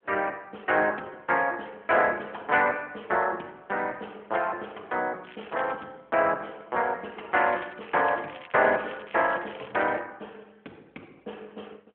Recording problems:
telephone audio; 280 Hz to 3.4 kHz, AMR-NB
crackle; at 5 s and from 7.5 to 10 s; loose cable, SNR 20 dB

